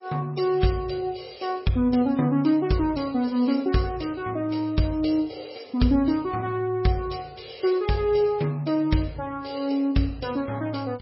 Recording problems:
lossy compression; MP3, log-spectral distance 4 dB, nothing above 5.3 kHz

